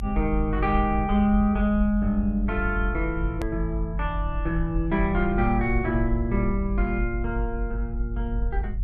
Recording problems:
low-frequency rumble; below 54 Hz, strongest tone 44 Hz, SNR 4 dB
hard cut with a click; at 3.5 s

